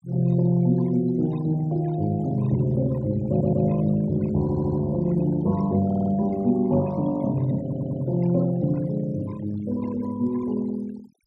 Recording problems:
noise reduction artefacts; signal-to-artefact ratio 22 dB
audio stuttering; 4 times, first at 3.5 s

